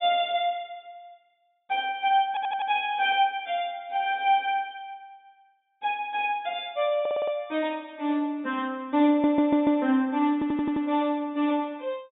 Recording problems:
treble missing; nothing above 4 kHz
stutter; 4 times, first at 2.5 s

